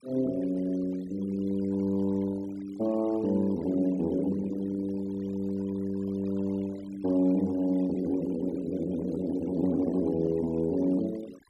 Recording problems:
denoising artefacts; signal-to-artefact ratio 22 dB

